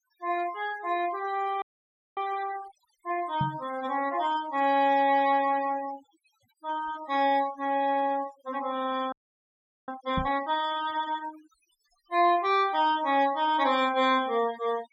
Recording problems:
noise reduction artefacts; signal-to-artefact ratio 16 dB
audio freezing; at 1.5 s for 0.5 s and at 9 s for 1 s
microphone thump; at 3.5 s and at 10 s; peak 0 dB vs average level

